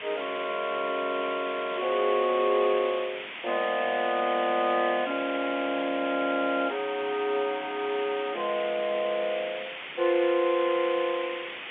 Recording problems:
phone line; 280 Hz to 3.7 kHz, G.711
background hiss; SNR 9 dB

